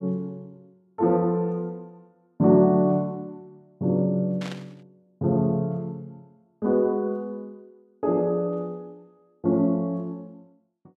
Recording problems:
static burst; at 4.5 s; peak -10 dB vs average level

